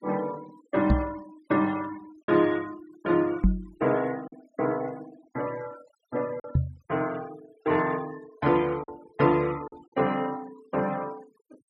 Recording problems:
noise reduction artefacts; signal-to-artefact ratio 20 dB
lost packets; 1.9% of the sound replaced, filled with silence
microphone bump; at 1 s, at 3.5 s and at 6.5 s; peak +9 dB vs average level

